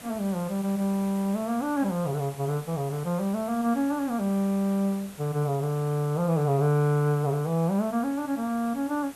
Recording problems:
hiss; slope -3 dB per octave, SNR 19 dB

